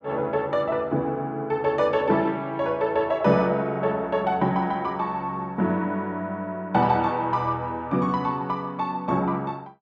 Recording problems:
none

